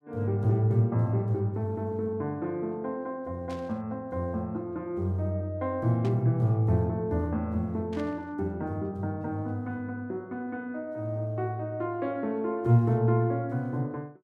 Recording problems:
burst of static; at 3.5 s, at 6 s and at 8 s; peak -13 dB vs average level

